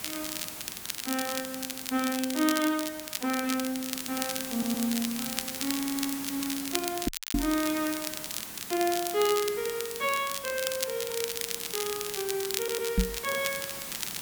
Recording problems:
background hiss; slope -1 dB per octave, SNR 7 dB
crackle; vinyl, SNR 4 dB
stutter; at 4.5 s, at 6 s and at 13 s
microphone bump; at 7 s and at 13 s; peak +8 dB vs average level
dropout; at 7 s

